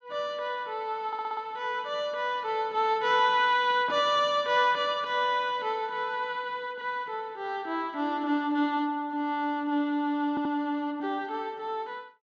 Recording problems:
stutter; at 1 s and at 10 s

